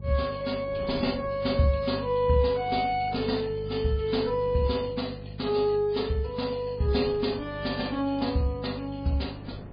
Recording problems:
lossy codec; MP3, log-spectral distance 4 dB, nothing above 4.8 kHz
electrical hum; 50 Hz, harmonics up to 450 Hz, SNR 13 dB
wind noise; below 440 Hz, SNR 20 dB

